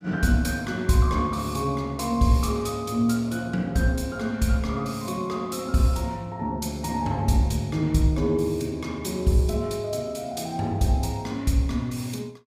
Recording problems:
none

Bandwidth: 15.5 kHz